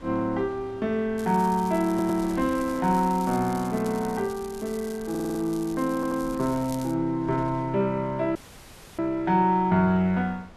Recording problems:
wind on the microphone; below 700 Hz, SNR 21 dB
crackle; from 1 to 7 s; loose cable, SNR 20 dB
stutter; at 2 s, at 5 s and at 6 s
audio cutting out; at 8.5 s for 0.5 s

